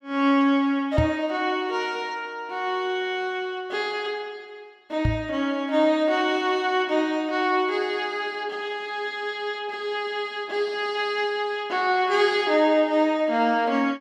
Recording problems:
knock on the microphone; at 1 s and at 5 s; peak +5 dB vs average level

